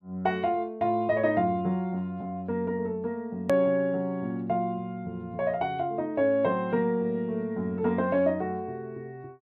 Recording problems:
click at an edit; at 3.5 s

